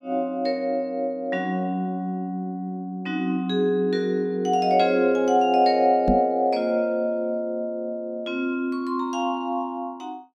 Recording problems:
microphone bump; at 6 s; peak +5 dB vs average level

